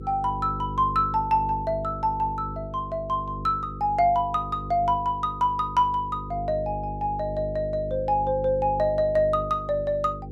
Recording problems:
hum; 50 Hz, harmonics up to 500 Hz, SNR 11 dB

